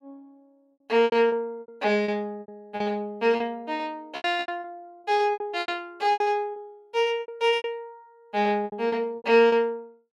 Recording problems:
lost packets; 15% of the sound replaced, filled with repeated pitch periods

